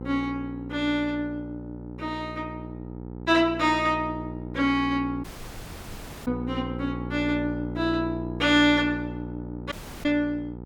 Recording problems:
hum; 60 Hz, harmonics up to 1 kHz, SNR 10 dB
audio cutting out; at 5 s for 1 s and at 9.5 s

